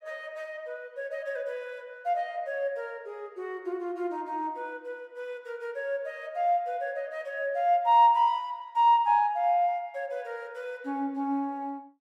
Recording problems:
none

